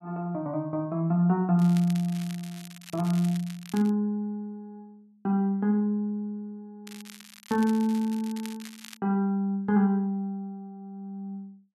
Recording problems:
crackle; from 1.5 to 4 s and from 7 to 9 s; loose cable, SNR 19 dB

